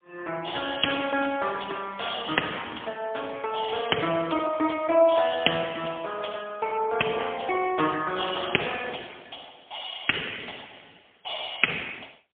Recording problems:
phone line; 220 Hz to 3.3 kHz, AMR-NB, then MP3

